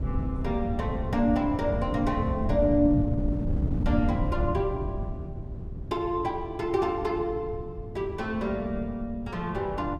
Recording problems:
wind noise; below 150 Hz, SNR 4 dB

